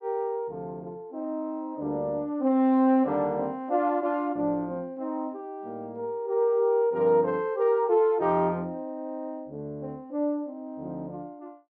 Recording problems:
none

